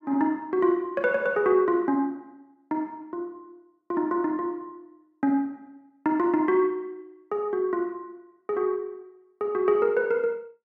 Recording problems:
none

